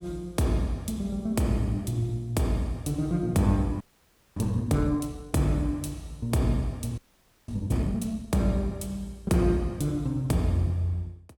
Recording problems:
audio freezing; at 4 s for 0.5 s and at 7 s for 0.5 s

